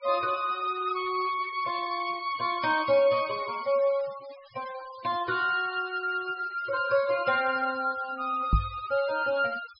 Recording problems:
treble missing; nothing above 5.5 kHz
denoising artefacts; signal-to-artefact ratio 19 dB
knock on the microphone; at 8.5 s; peak +7 dB vs average level

